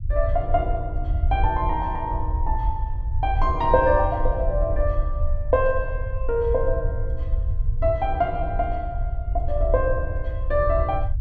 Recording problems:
low-frequency rumble; below 70 Hz, SNR 2 dB

